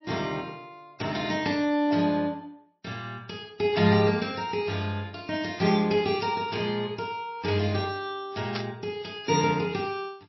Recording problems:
codec artefacts; MP3, log-spectral distance 4 dB, nothing above 5.7 kHz
static burst; at 8.5 s; peak -2 dB vs average level

